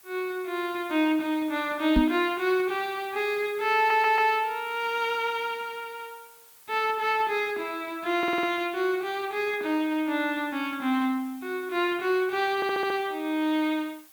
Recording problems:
hiss; SNR 24 dB
microphone thump; at 2 s; peak +6 dB vs average level
audio stuttering; at 4 s, at 8 s and at 13 s

